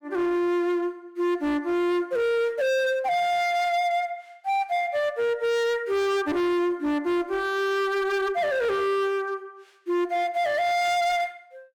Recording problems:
distortion; hard clipping, signal-to-distortion ratio 11 dB

